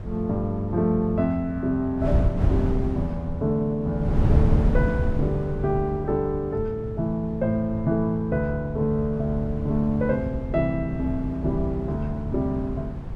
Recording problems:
wind on the microphone; below 130 Hz, SNR 4 dB

